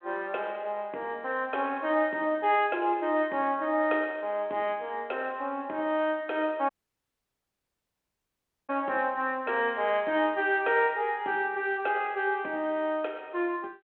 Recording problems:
phone line; 280 Hz to 3.4 kHz, G.726
audio cutting out; at 6.5 s for 2 s

